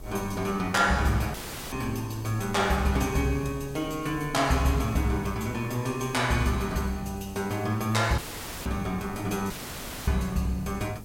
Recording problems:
background hiss; slope +3 dB per octave, SNR 27 dB
wind noise; below 270 Hz, SNR 19 dB
dropout; at 1.5 s, at 8 s and at 9.5 s for 0.5 s; filled with static

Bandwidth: 16.5 kHz